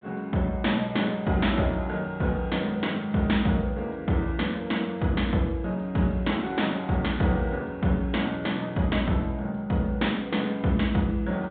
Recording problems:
low-pass filter; nothing above 4 kHz

